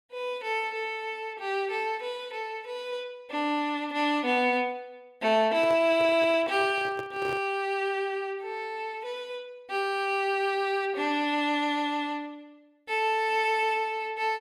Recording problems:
microphone handling noise; from 5.5 to 7.5 s; peak -7 dB vs average level

